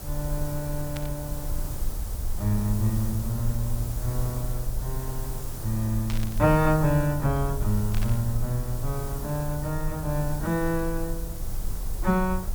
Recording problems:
hiss; SNR 11 dB
low-frequency rumble; below 56 Hz, strongest tone 20 Hz, SNR 7 dB
burst of static; at 1 s, at 6 s and at 8 s; peak -6 dB vs average level

